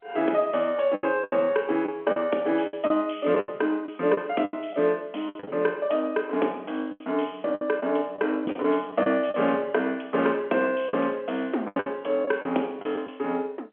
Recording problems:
telephone audio; 220 Hz to 3.3 kHz, G.711
packet loss; 9% of the sound replaced, filled with the last packet

